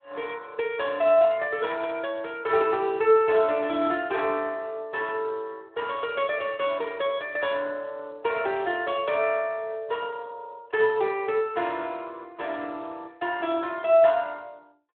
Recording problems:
telephone audio; 300 Hz to 3.5 kHz, Speex

